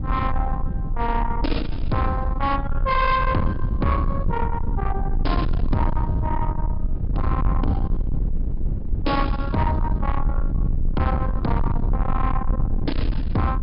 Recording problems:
treble missing; nothing above 5.5 kHz
distortion; soft clipping, signal-to-distortion ratio 8 dB
rumble; below 96 Hz, SNR 1 dB

